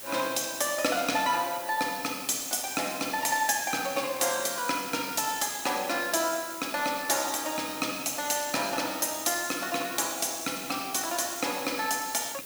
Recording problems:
hiss; slope -1 dB per octave, SNR 10 dB
crackling; vinyl, SNR 28 dB

